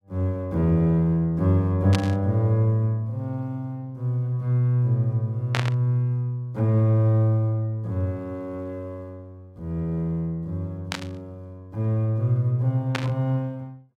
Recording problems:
static burst; 4 times, first at 2 s; peak +1 dB vs average level

